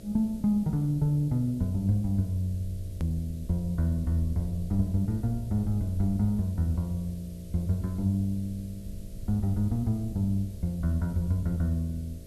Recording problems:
hum; 60 Hz, harmonics up to 660 Hz, SNR 20 dB
hiss; slope +3 dB per octave, SNR 27 dB
rumble; below 88 Hz, SNR 17 dB
click at an edit; at 3 s

